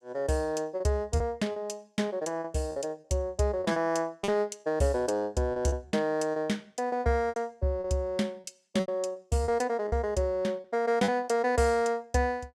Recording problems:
packet loss; 9% of the sound replaced, filled with repeated pitch periods

